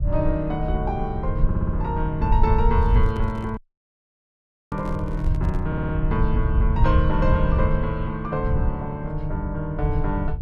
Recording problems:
hum; 60 Hz, harmonics up to 1.5 kHz, SNR 27 dB
rumble; below 82 Hz, SNR -1 dB
audio stuttering; at 1.5 s and at 5.5 s
microphone handling noise; from 2.5 to 6 s; peak -7 dB vs average level
audio cutting out; at 3.5 s for 1 s

